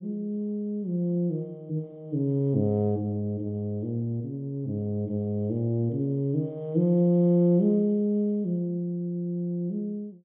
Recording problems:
low-pass filter; nothing above 4 kHz

